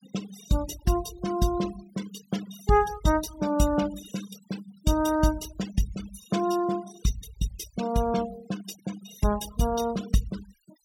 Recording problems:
noise reduction artefacts; signal-to-artefact ratio 14 dB

